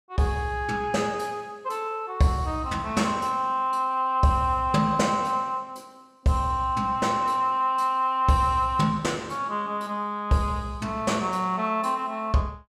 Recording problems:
none

